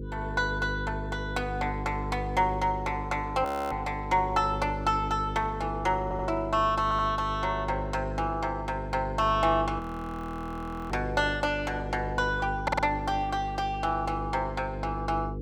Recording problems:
hum; 50 Hz, harmonics up to 500 Hz, SNR 7 dB
frozen audio; at 3.5 s and at 10 s for 1 s
audio stuttering; at 6 s, at 7 s and at 13 s

